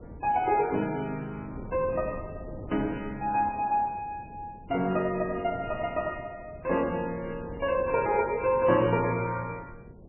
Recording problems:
lossy compression; MP3, log-spectral distance 3 dB, nothing above 2.7 kHz
wind noise; below 350 Hz, SNR 16 dB

